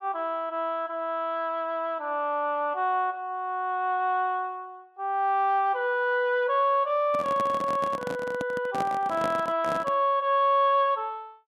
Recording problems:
microphone handling noise; from 7 to 10 s; peak -2 dB vs average level

